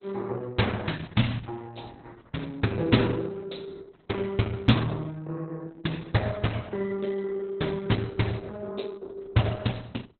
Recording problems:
codec artefacts; Opus, log-spectral distance 5 dB, nothing above 4 kHz

